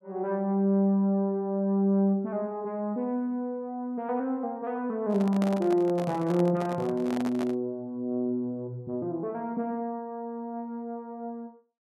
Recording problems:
microphone handling noise; from 5 to 7.5 s; peak -2 dB vs average level

